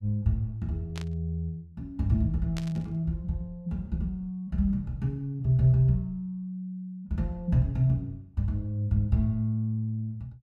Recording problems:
burst of static; at 1 s and at 2.5 s; peak -7 dB vs average level

